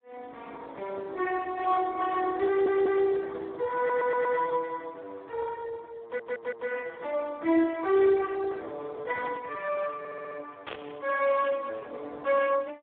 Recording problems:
telephone audio; 280 Hz to 2.7 kHz, Speex
audio stuttering; 4 times, first at 2.5 s
burst of static; at 11 s; peak -6 dB vs average level

